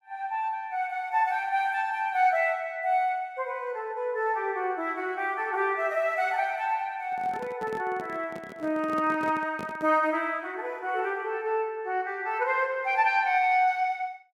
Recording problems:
handling noise; from 7 to 10 s; peak -7 dB vs average level

